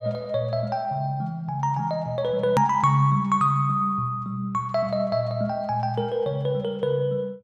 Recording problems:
click at an edit; at 2.5 s

